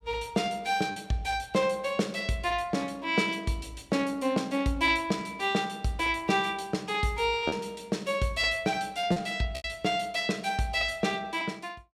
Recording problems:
packet loss; 1.7% of the sound replaced, filled with repeated pitch periods

